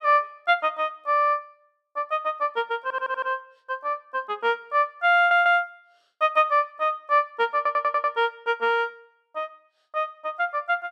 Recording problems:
audio stuttering; at 3 s, at 5 s and at 7.5 s

